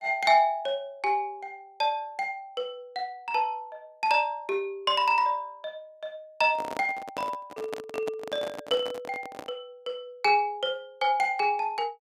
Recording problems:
microphone handling noise; from 6.5 to 9.5 s; peak -4 dB vs average level

